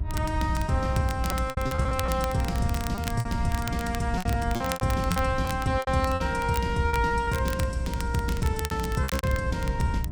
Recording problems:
electrical hum; 50 Hz, harmonics up to 1.7 kHz, SNR 16 dB
low-frequency rumble; below 88 Hz, SNR 6 dB
crackling; vinyl, SNR 12 dB
packet loss; 11% of the sound replaced, filled with repeated pitch periods

